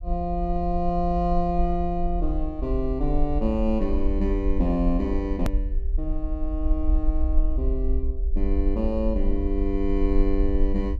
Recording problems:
low-frequency rumble; below 52 Hz, SNR 1 dB
hard cut with a click; at 5.5 s

